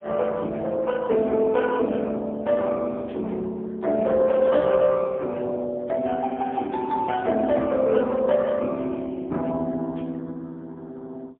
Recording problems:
phone line; 220 Hz to 3.5 kHz, AMR-NB, then MP3
static burst; 4 times, first at 3 s; peak -19 dB vs average level

